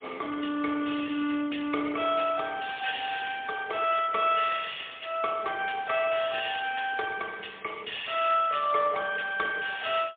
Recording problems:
phone line; 240 Hz to 3.5 kHz, AMR-NB, then MP3

